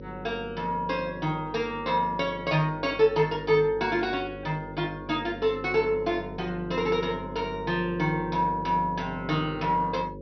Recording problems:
treble cut off; nothing above 6 kHz
mains hum; 50 Hz, harmonics up to 550 Hz, SNR 13 dB

